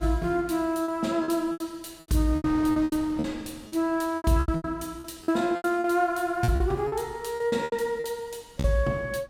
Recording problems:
wind noise; below 520 Hz, SNR 21 dB
packet loss; 14% of the sound replaced, filled with repeated pitch periods

